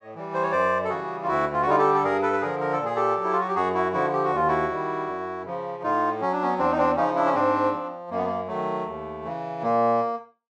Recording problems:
none

